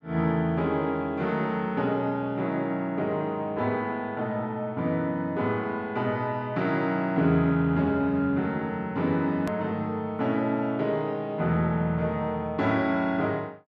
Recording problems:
click at an edit; at 9.5 s

